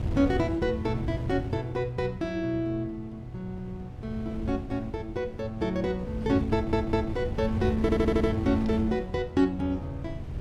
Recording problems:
wind noise; below 150 Hz, SNR 7 dB
stutter; at 6.5 s and at 8 s

